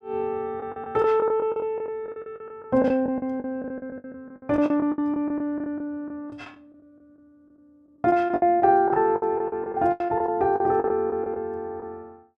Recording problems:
packet loss; 17% of the sound replaced, filled with the last packet

